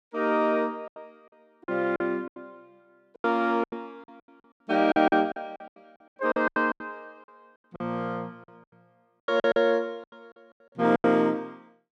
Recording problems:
lost packets; 16% of the sound replaced, filled with silence

